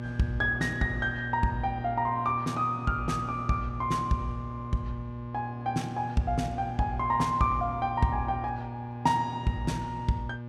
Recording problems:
hum; 60 Hz, harmonics up to 1.2 kHz, SNR 8 dB

